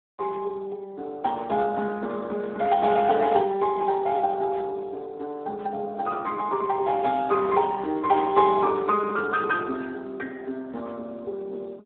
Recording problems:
telephone audio; 220 Hz to 2.1 kHz, Speex

